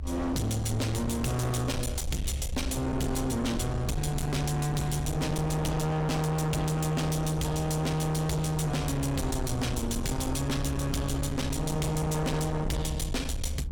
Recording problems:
distortion; soft clipping, signal-to-distortion ratio 6 dB
rumble; below 160 Hz, SNR 6 dB

